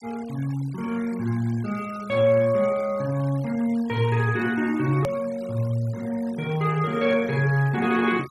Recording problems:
denoising artefacts; signal-to-artefact ratio 22 dB
edit click; at 5 s

